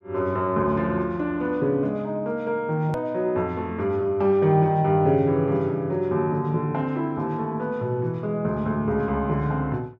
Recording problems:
hard cut with a click; at 3 s

